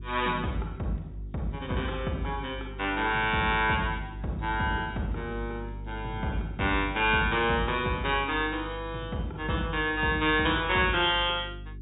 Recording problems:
treble missing; nothing above 4 kHz
hum; 50 Hz, harmonics up to 400 Hz, SNR 13 dB

